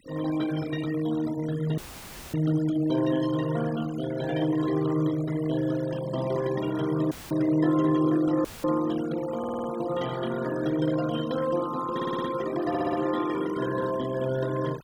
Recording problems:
noise reduction artefacts; signal-to-artefact ratio 15 dB
dropout; at 2 s for 0.5 s, at 7 s and at 8.5 s; filled with static
stutter; at 9.5 s, at 12 s and at 13 s

